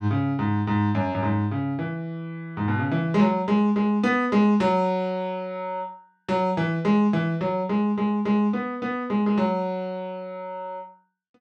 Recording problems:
none

